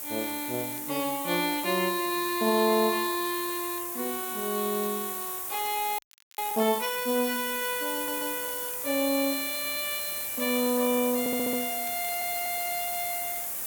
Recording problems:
hiss; SNR 2 dB
crackling; vinyl, SNR 26 dB
frozen audio; at 6 s
audio stuttering; at 8 s, at 11 s and at 12 s

